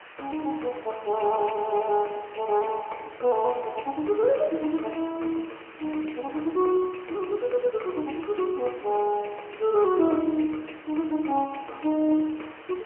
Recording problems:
telephone audio; 260 Hz to 3.1 kHz, AMR-NB, then MP3
background hiss; SNR 19 dB

